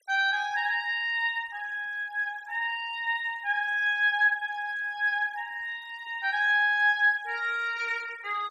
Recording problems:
noise reduction artefacts; signal-to-artefact ratio 26 dB

